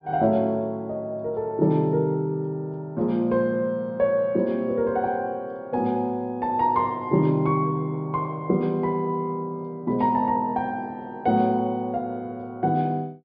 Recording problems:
treble missing; nothing above 5.5 kHz

